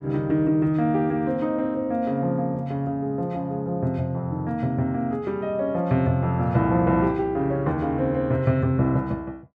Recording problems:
none

